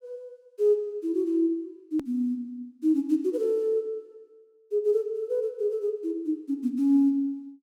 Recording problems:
click at an edit; at 2 s

